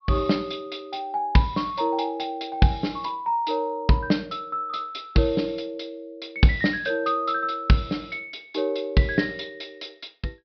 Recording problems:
treble missing; nothing above 5.5 kHz

